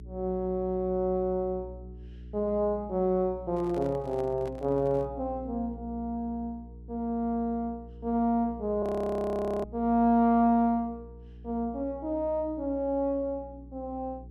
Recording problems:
electrical hum; 60 Hz, harmonics up to 420 Hz, SNR 17 dB
microphone handling noise; from 3.5 to 5 s; peak -12 dB vs average level
frozen audio; at 9 s for 1 s

